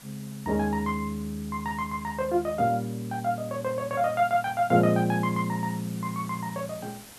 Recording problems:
background hiss; slope -1 dB per octave, SNR 19 dB

